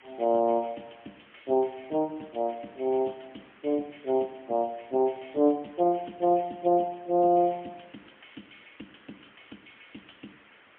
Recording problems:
telephone audio; 190 Hz to 3.3 kHz, AMR-NB, then MP3
hiss; SNR 27 dB

